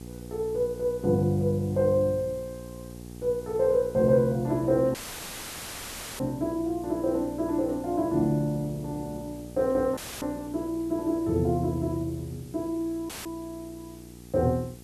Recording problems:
hum; 60 Hz, harmonics up to 900 Hz, SNR 16 dB
hiss; slope +3 dB per octave, SNR 25 dB
audio cutting out; at 5 s for 1.5 s, at 10 s and at 13 s; filled with static

